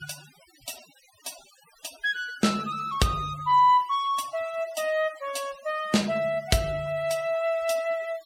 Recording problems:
noise reduction artefacts; signal-to-artefact ratio 21 dB

